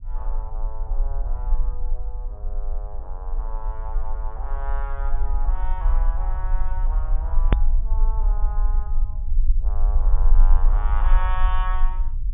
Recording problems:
treble cut off; nothing above 3.6 kHz
rumble; below 40 Hz, strongest tone 20 Hz, SNR -12 dB
click at an edit; at 7.5 s

